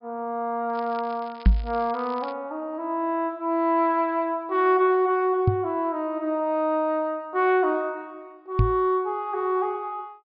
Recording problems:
treble missing; nothing above 5.5 kHz
crackle; from 0.5 to 2.5 s; loose cable, SNR 24 dB
knock on the microphone; at 1.5 s, at 5.5 s and at 8.5 s; peak +10 dB vs average level

